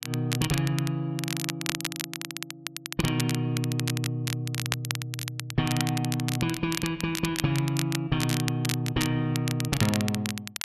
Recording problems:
crackling; vinyl, SNR 5 dB

